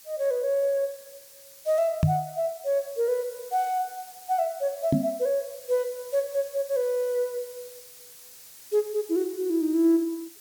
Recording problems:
hiss; slope +2 dB per octave, SNR 18 dB
microphone bump; at 2 s and at 5 s; peak +9 dB vs average level

